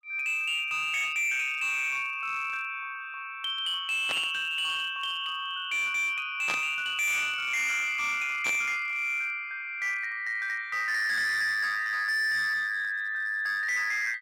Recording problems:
distorted audio; hard clipping, signal-to-distortion ratio 10 dB
burst of static; at 4 s, at 6.5 s and at 8.5 s; peak -1 dB vs average level

